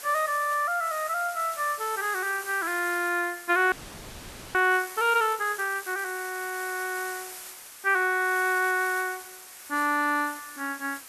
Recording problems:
background hiss; slope +1 dB per octave, SNR 13 dB
audio freezing; at 3.5 s for 1 s

